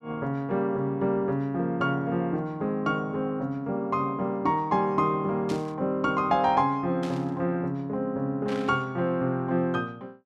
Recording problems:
burst of static; at 5.5 s, at 7 s and at 8.5 s; peak -9 dB vs average level

